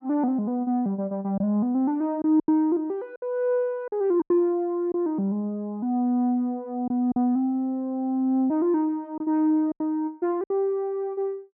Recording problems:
packet loss; 5% of the sound replaced, filled with silence

